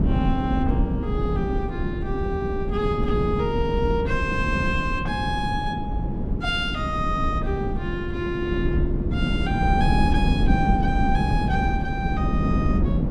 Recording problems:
wind on the microphone; below 210 Hz, SNR -2 dB

